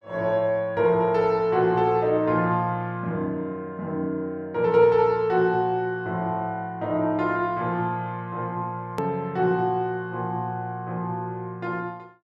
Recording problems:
edit click; at 9 s

